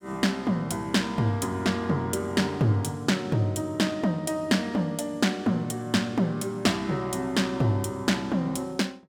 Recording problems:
none

